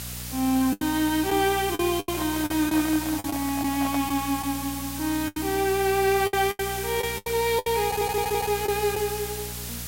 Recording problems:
electrical hum; 60 Hz, harmonics up to 540 Hz, SNR 14 dB
hiss; slope +1 dB per octave, SNR 8 dB
lost packets; 9% of the sound replaced, filled with the last packet
handling noise; from 2 to 4 s; peak -5 dB vs average level
audio stuttering; at 8 s

